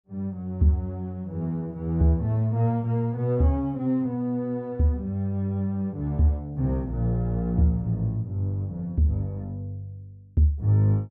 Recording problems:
none

